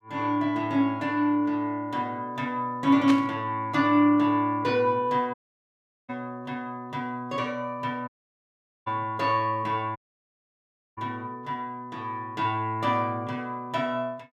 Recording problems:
burst of static; at 3 s; peak -1 dB vs average level
dropout; at 5.5 s for 0.5 s, at 8 s for 1 s and at 10 s for 1 s

